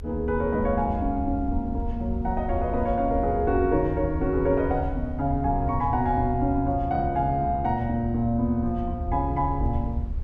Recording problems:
rumble; below 76 Hz, SNR 7 dB

